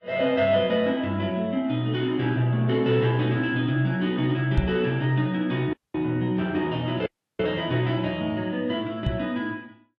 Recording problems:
lossy codec; Vorbis, log-spectral distance 2 dB
knock on the microphone; at 4.5 s and at 9 s; peak +5 dB vs average level
audio cutting out; at 5.5 s and at 7 s

